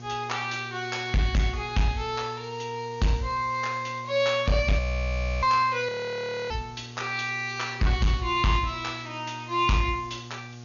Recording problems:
low-pass filter; nothing above 6.8 kHz
distorted audio; hard clipping, signal-to-distortion ratio 10 dB
electrical hum; 60 Hz, harmonics up to 1.6 kHz, SNR 16 dB
background hiss; slope +1 dB per octave, SNR 25 dB
audio freezing; at 5 s for 0.5 s and at 6 s for 0.5 s

